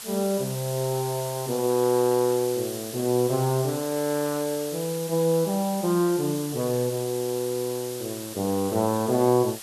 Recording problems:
background hiss; slope +1 dB per octave, SNR 11 dB

